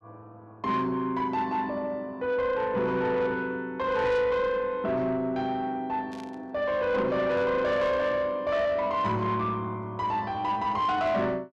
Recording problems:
distortion; soft clipping, signal-to-distortion ratio 12 dB
static burst; at 6 s; peak -16 dB vs average level

